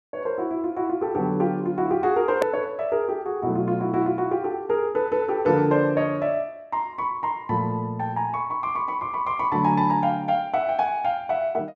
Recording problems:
hard cut with a click; at 2.5 s

